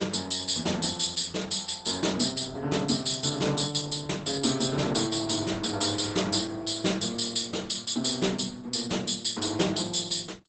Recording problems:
codec artefacts; Opus, log-spectral distance 10 dB, nothing above 8.2 kHz

